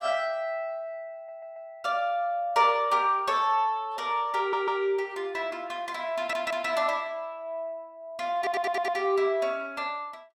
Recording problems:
audio stuttering; 4 times, first at 1 s

